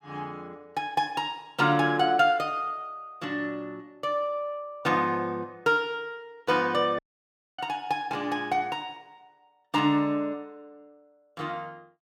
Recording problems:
dropout; at 7 s for 0.5 s

